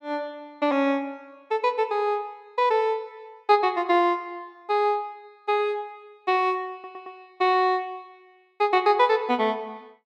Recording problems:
audio stuttering; at 6.5 s

